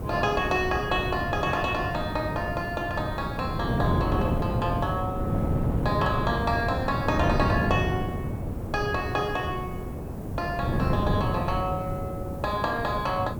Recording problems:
hiss; slope +1 dB per octave, SNR 26 dB
wind noise; below 320 Hz, SNR 1 dB

